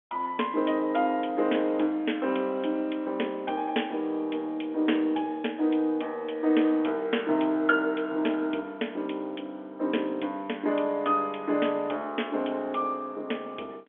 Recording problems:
telephone audio; 260 Hz to 3.4 kHz, G.711

